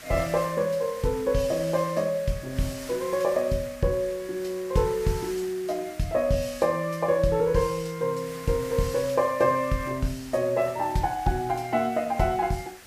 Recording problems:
background hiss; SNR 17 dB

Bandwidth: 15 kHz